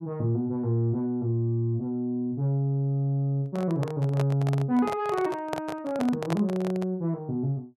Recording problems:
handling noise; from 3.5 to 7 s; peak -1 dB vs average level

